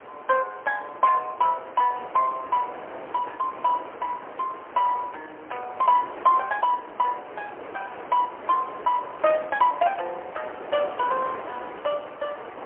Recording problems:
telephone audio; 320 Hz to 3 kHz, AMR-NB, then MP3
wind noise; below 1.3 kHz, SNR 14 dB

